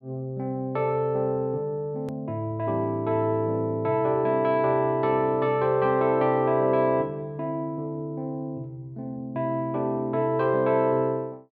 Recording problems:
edit click; at 2 s

